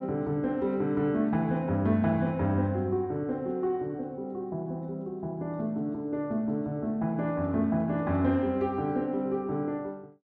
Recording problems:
none

